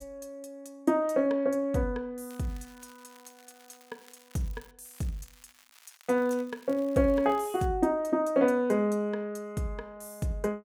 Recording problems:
crackle; from 2.5 to 4.5 s and from 5 to 7.5 s; loose cable, SNR 27 dB

